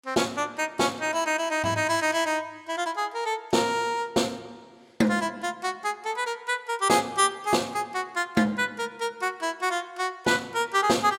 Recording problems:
none

